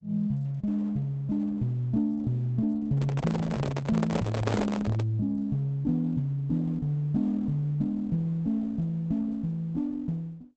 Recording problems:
lossy codec; Opus, log-spectral distance 2 dB, nothing above 7.6 kHz
handling noise; from 3 to 5 s; peak +3 dB vs average level

